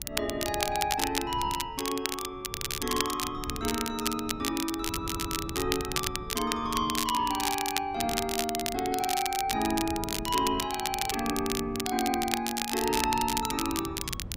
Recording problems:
wind noise; below 200 Hz, SNR 13 dB
crackle; vinyl, SNR 2 dB
stutter; at 2.5 s and at 5 s

